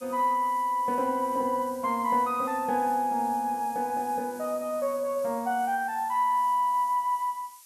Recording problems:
background hiss; slope +4 dB per octave, SNR 21 dB

